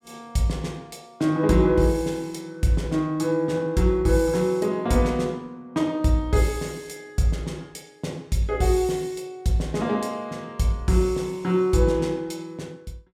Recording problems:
none

